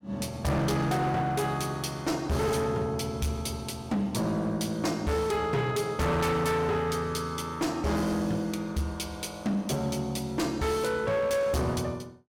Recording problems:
distorted audio; hard clipping, uneven, signal-to-distortion ratio 8 dB

